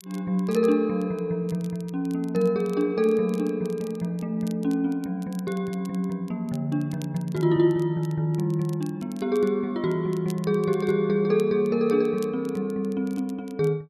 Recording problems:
crackle; vinyl, SNR 26 dB

